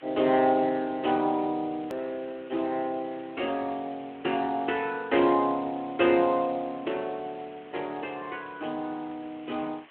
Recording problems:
telephone audio; 190 Hz to 3.5 kHz, Speex
hiss; SNR 24 dB
edit click; at 2 s

